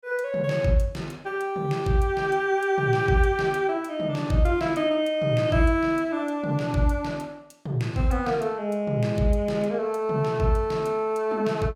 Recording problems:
none

